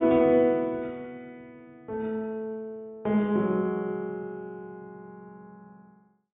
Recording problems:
treble missing; nothing above 4 kHz

